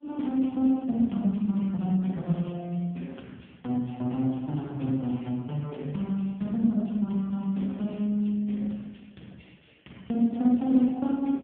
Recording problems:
telephone audio; 86 Hz to 3.6 kHz, AMR-NB

